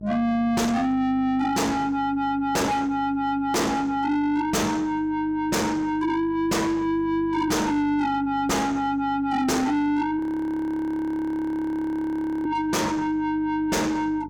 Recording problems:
distortion; soft clipping, signal-to-distortion ratio 8 dB
hum; 50 Hz, harmonics up to 550 Hz, SNR 21 dB
audio freezing; at 10 s for 2.5 s

